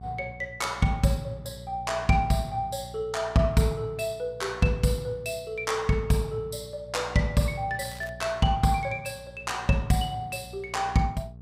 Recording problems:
mains hum; 60 Hz, harmonics up to 480 Hz, SNR 19 dB
crackle; at 8 s; loose cable, SNR 23 dB

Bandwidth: 15.5 kHz